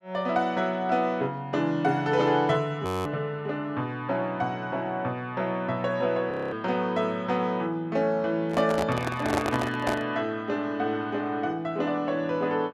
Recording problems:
frozen audio; at 3 s and at 6.5 s
handling noise; from 8.5 to 10 s; peak +4 dB vs average level

